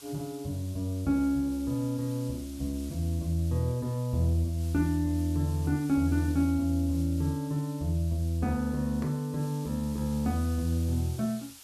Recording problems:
background hiss; slope +2 dB per octave, SNR 19 dB

